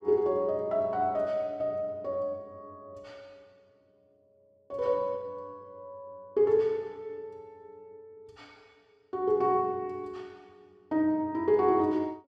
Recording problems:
none

